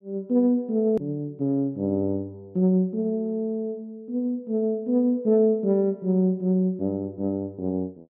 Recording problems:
edit click; at 1 s

